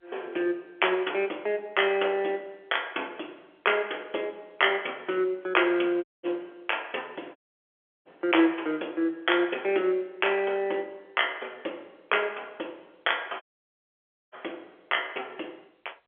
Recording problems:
phone line; 280 Hz to 3.4 kHz, G.711
dropout; at 6 s, at 7.5 s for 0.5 s and at 13 s for 1 s

